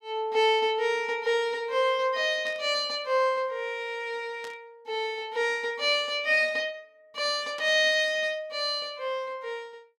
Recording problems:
static burst; at 2.5 s, at 4.5 s and at 7.5 s; peak -12 dB vs average level

